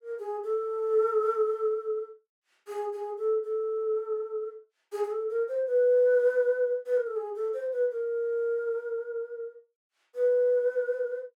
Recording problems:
none

